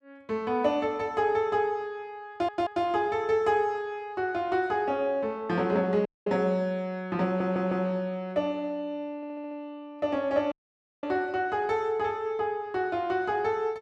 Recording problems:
audio stuttering; at 2.5 s, at 7.5 s and at 9 s
dropout; at 6 s and at 11 s for 0.5 s

